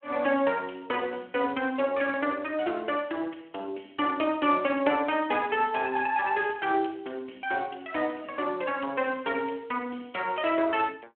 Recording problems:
phone line; 260 Hz to 3.3 kHz, Speex

